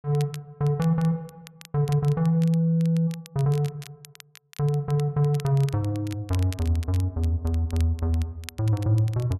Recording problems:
crackle; vinyl, SNR 22 dB

